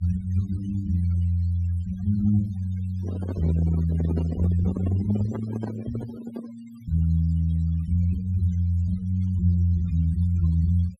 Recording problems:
denoising artefacts; signal-to-artefact ratio 21 dB
microphone handling noise; from 3 to 6.5 s; peak -2 dB vs average level

